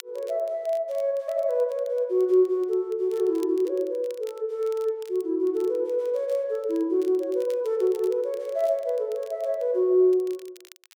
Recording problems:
crackling; vinyl, SNR 28 dB

